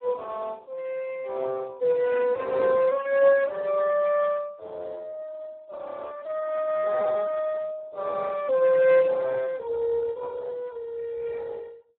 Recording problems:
telephone audio; 320 Hz to 3.1 kHz, Speex

